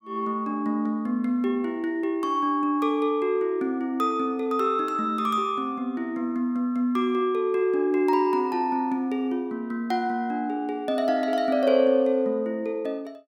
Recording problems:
none

